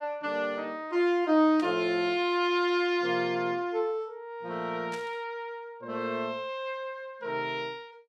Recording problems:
static burst; at 1.5 s and at 5 s; peak -10 dB vs average level

